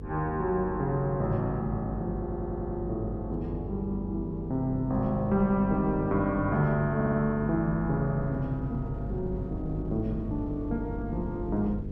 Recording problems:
hum; 50 Hz, harmonics up to 500 Hz, SNR 9 dB
wind noise; below 130 Hz, SNR 16 dB
stutter; at 2 s and at 7 s

